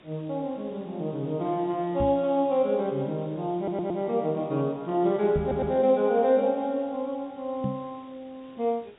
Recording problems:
treble cut off; nothing above 4 kHz
background hiss; SNR 28 dB
microphone thump; at 2 s, at 5.5 s and at 7.5 s; peak 0 dB vs average level
stutter; at 3.5 s and at 5.5 s

